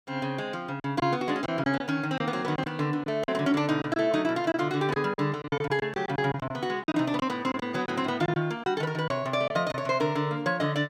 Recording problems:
lost packets; 8% of the sound replaced, filled with silence

